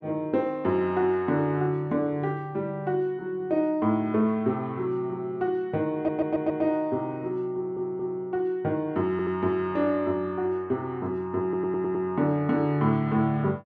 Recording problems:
audio stuttering; 4 times, first at 6 s

